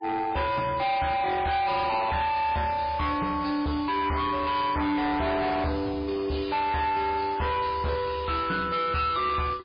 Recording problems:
lossy codec; MP3, log-spectral distance 4 dB, nothing above 5 kHz
distorted audio; hard clipping, uneven, signal-to-distortion ratio 7 dB

